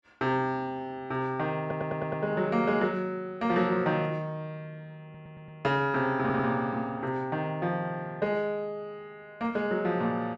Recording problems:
stutter; at 1.5 s, at 5 s and at 6 s

